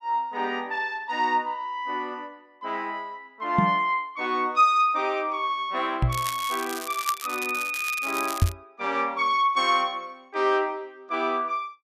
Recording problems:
knock on the microphone; at 3.5 s, at 6 s and at 8.5 s; peak +8 dB vs average level
crackling; from 6 to 8.5 s; loose cable, SNR 10 dB

